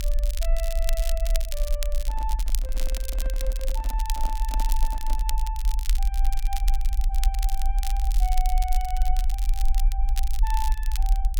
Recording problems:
rumble; below 46 Hz, SNR -9 dB
crackling; vinyl, SNR 2 dB
handling noise; from 2 to 5.5 s; peak -1 dB vs average level

